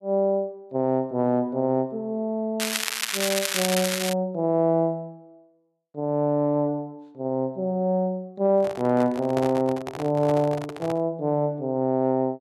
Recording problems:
crackling; from 2.5 to 4 s; loose cable, SNR 1 dB
microphone handling noise; from 8.5 to 11 s; peak -2 dB vs average level

